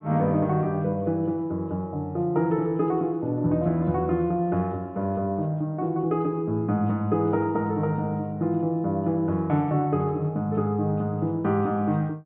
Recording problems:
treble cut off; nothing above 4 kHz

